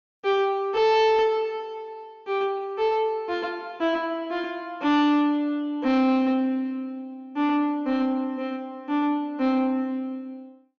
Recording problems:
treble cut off; nothing above 6.8 kHz
distortion; soft clipping, signal-to-distortion ratio 11 dB

